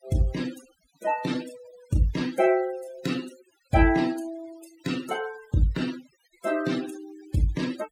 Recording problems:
noise reduction artefacts; signal-to-artefact ratio 15 dB

